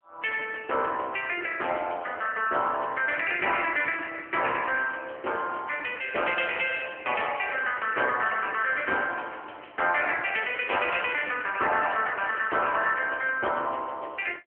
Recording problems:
telephone audio; 320 Hz to 3.1 kHz, AMR-NB

